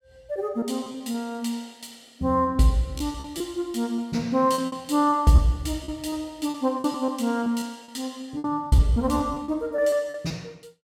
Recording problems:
lost packets; 10% of the sound replaced, filled with repeated pitch periods

